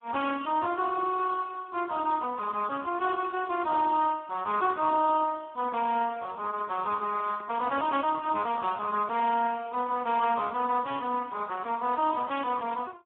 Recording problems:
phone line; 220 Hz to 2.3 kHz, Speex
microphone handling noise; from 7 to 9.5 s; peak -10 dB vs average level

